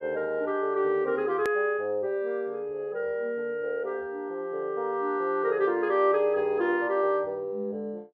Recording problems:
click at an edit; at 1.5 s

